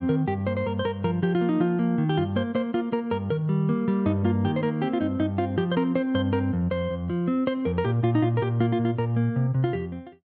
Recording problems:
none

